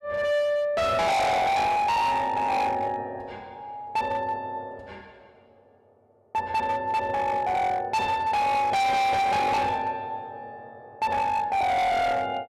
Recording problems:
distortion; hard clipping, signal-to-distortion ratio 6 dB

